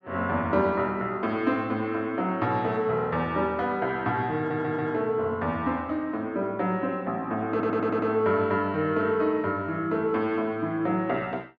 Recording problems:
audio stuttering; at 4.5 s and at 7.5 s

